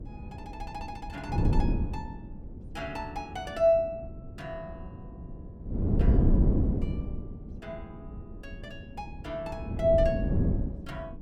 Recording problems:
wind noise; below 200 Hz, SNR -3 dB

